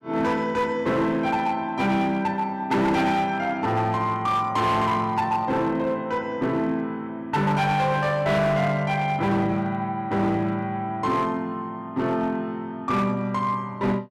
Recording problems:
distortion; hard clipping, signal-to-distortion ratio 11 dB

